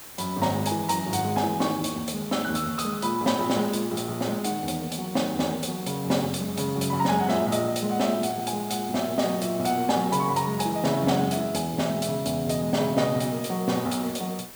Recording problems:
background hiss; slope -2 dB per octave, SNR 14 dB

